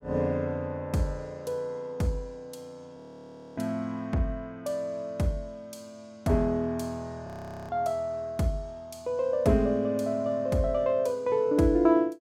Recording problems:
frozen audio; at 3 s for 0.5 s and at 7.5 s

